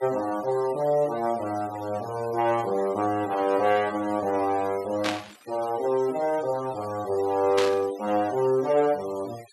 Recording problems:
denoising artefacts; signal-to-artefact ratio 19 dB
burst of static; at 5 s and at 7.5 s; peak +1 dB vs average level

